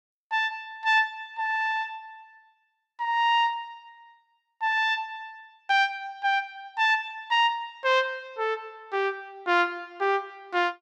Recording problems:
none

